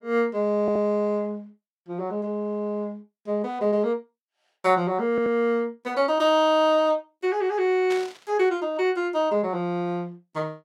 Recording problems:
audio stuttering; at 0.5 s and at 5 s
static burst; at 8 s; peak -8 dB vs average level

